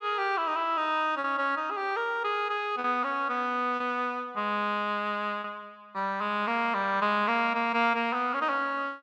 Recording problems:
lost packets; 1.8% of the sound replaced, filled with repeated pitch periods

